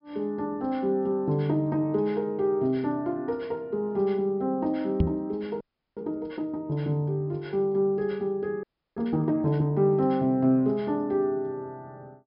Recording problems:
treble missing; nothing above 5.5 kHz
microphone bump; at 5 s; peak +7 dB vs average level
audio freezing; at 5.5 s and at 8.5 s

